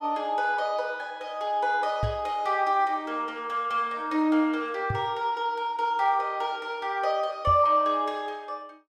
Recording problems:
knock on the microphone; at 2 s, at 5 s and at 7.5 s; peak +1 dB vs average level

